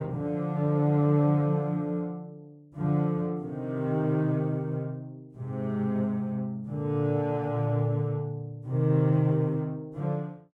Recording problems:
none

